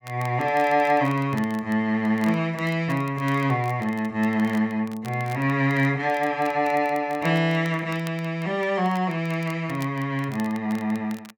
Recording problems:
crackling; vinyl, SNR 23 dB

